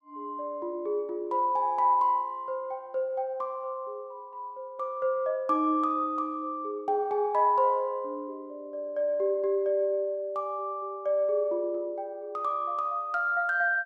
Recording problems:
none

